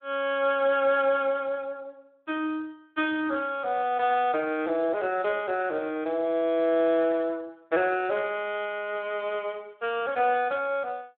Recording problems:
telephone audio; 280 Hz to 3.5 kHz, Speex

